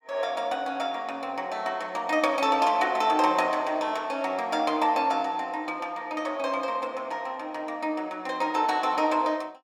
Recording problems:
none

